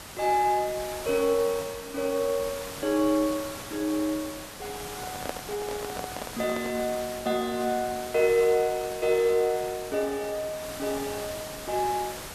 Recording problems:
hiss; slope -2 dB per octave, SNR 11 dB
microphone handling noise; from 5 to 7 s; peak -2 dB vs average level

